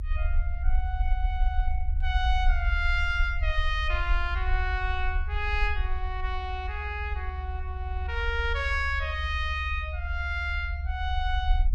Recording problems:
low-frequency rumble; below 70 Hz, SNR 0 dB

